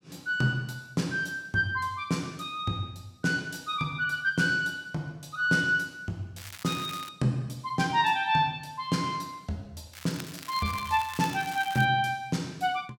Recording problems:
crackle; at 6.5 s and from 10 to 12 s; loose cable, SNR 14 dB

